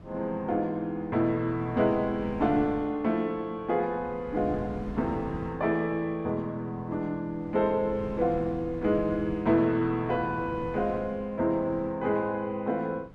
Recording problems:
wind noise; below 280 Hz, SNR 15 dB

